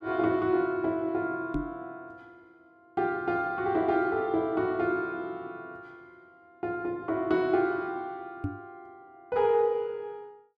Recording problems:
knock on the microphone; at 1.5 s and at 8.5 s; peak +2 dB vs average level

